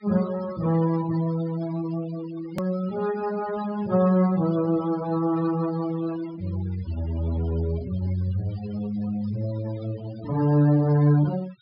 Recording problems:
treble cut off; nothing above 5.5 kHz
denoising artefacts; signal-to-artefact ratio 18 dB
edit click; at 2.5 s

